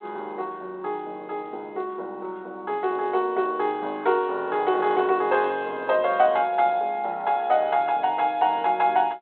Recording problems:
phone line; 320 Hz to 3.8 kHz, G.726

